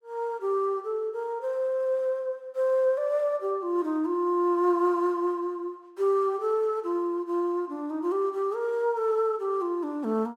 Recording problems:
none

